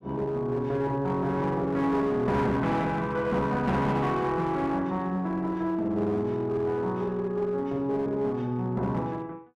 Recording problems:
distorted audio; hard clipping, uneven, signal-to-distortion ratio 10 dB

